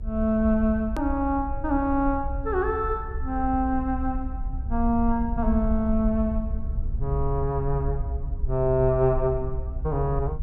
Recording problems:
rumble; below 64 Hz, SNR 6 dB
edit click; at 1 s

